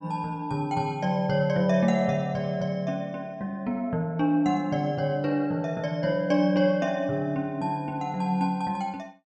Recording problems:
none

